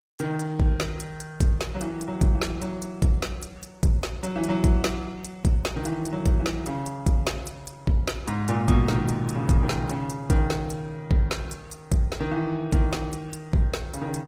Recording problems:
lossy compression; Opus, log-spectral distance 3 dB

